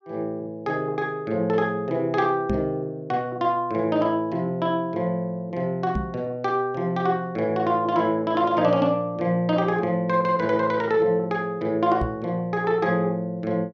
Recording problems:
knock on the microphone; at 2.5 s, at 6 s and at 12 s; peak 0 dB vs average level

